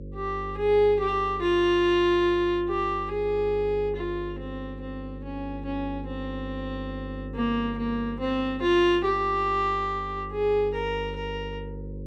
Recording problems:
hum; 50 Hz, harmonics up to 550 Hz, SNR 13 dB

